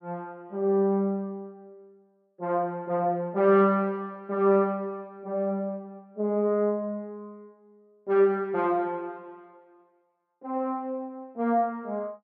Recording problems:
none

